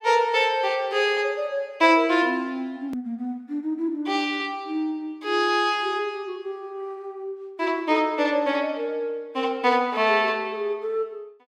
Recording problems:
hard cut with a click; at 3 s

